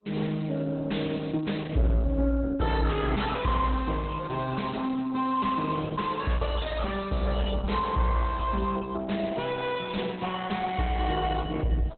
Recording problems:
lossy compression; Opus, log-spectral distance 5 dB, nothing above 4 kHz
distortion; soft clipping, signal-to-distortion ratio 6 dB

